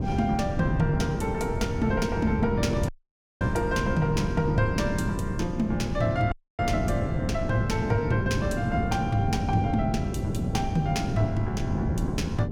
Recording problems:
wind noise; below 240 Hz, SNR 2 dB
dropout; at 3 s for 0.5 s and at 6.5 s

